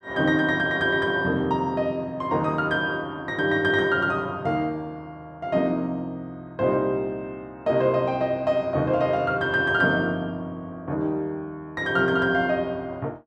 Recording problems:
none

